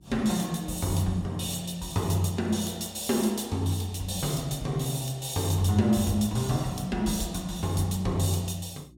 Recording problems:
hum; 60 Hz, harmonics up to 360 Hz, SNR 26 dB

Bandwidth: 16.5 kHz